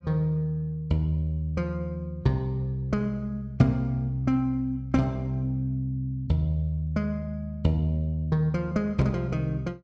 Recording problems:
none

